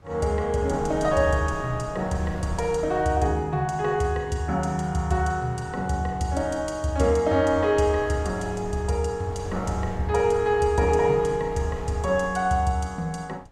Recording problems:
wind noise; below 320 Hz, SNR 17 dB

